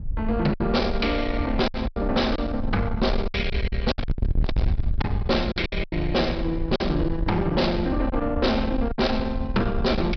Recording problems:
treble missing; nothing above 5.5 kHz
distortion; soft clipping, signal-to-distortion ratio 6 dB
wind noise; below 94 Hz, SNR 5 dB
lost packets; 9% of the sound replaced, filled with silence

